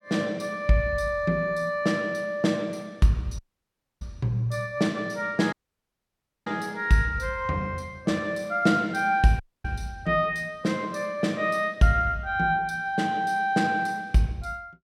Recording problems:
dropout; at 3.5 s for 0.5 s, at 5.5 s for 1 s and at 9.5 s

